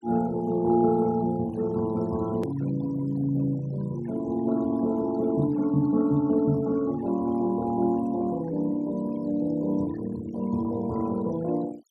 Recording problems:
noise reduction artefacts; signal-to-artefact ratio 22 dB
click at an edit; at 2.5 s

